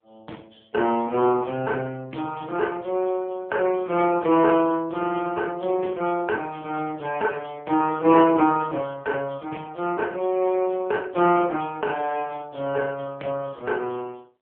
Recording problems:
phone line; 280 Hz to 3 kHz, AMR-NB

